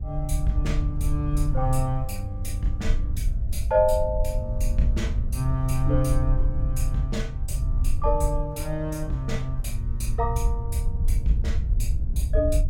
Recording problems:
wind on the microphone; below 68 Hz, SNR 0 dB

